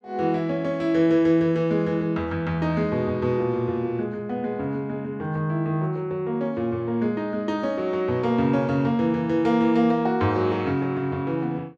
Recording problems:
none

